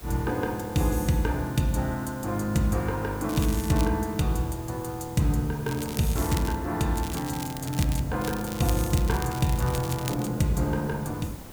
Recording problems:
hiss; slope -1 dB per octave, SNR 19 dB
wind noise; below 460 Hz, SNR 20 dB
crackling; 4 times, first at 3.5 s; loose cable, SNR 12 dB

